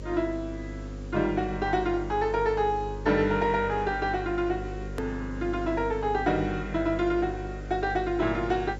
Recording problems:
treble missing; nothing above 8 kHz
hum; 50 Hz, harmonics up to 550 Hz, SNR 10 dB
background hiss; slope -2 dB per octave, SNR 27 dB
hard cut with a click; at 5 s

